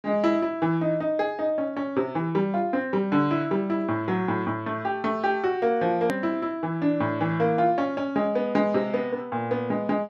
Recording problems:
hard cut with a click; at 6 s

